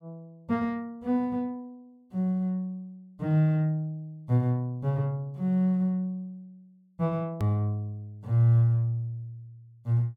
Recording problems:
hard cut with a click; at 7.5 s

